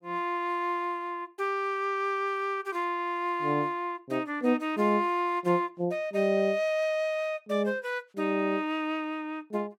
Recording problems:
none

